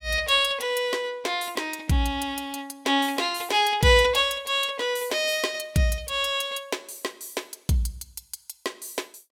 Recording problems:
none

